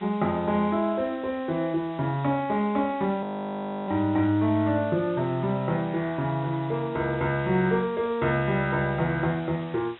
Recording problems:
low-pass filter; nothing above 3.8 kHz
hiss; SNR 22 dB
audio freezing; at 3 s for 0.5 s

